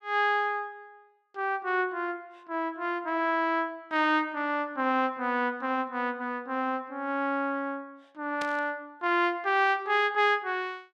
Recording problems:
burst of static; at 8.5 s; peak -6 dB vs average level

